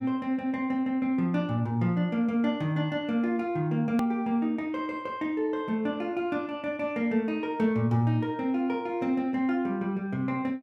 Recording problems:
edit click; at 4 s

